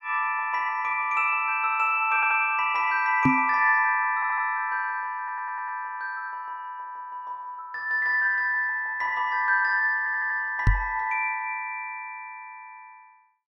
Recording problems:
stutter; 4 times, first at 2 s
microphone thump; at 3.5 s and at 11 s; peak +6 dB vs average level

